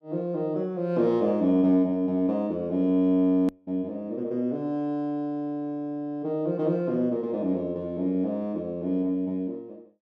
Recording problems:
hard cut with a click; at 3.5 s

